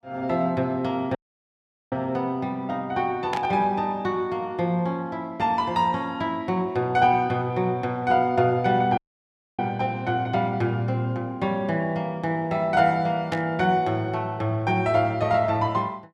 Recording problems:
audio cutting out; at 1 s for 1 s and at 9 s for 0.5 s
static burst; at 3.5 s and at 13 s; peak -4 dB vs average level

